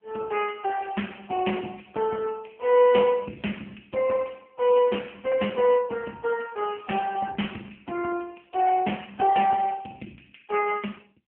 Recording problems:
phone line; 220 Hz to 3.2 kHz, AMR-NB

